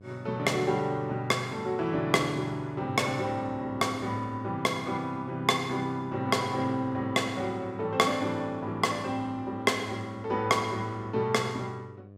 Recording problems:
electrical hum; 50 Hz, harmonics up to 700 Hz, SNR 21 dB

